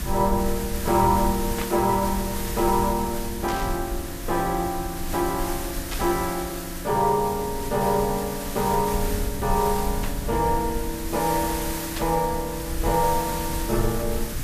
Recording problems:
background hiss; SNR 8 dB
low-frequency rumble; below 74 Hz, SNR 9 dB
burst of static; 5 times, first at 1.5 s; peak -4 dB vs average level

